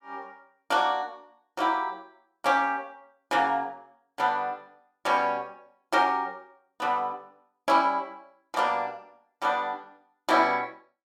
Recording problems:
none

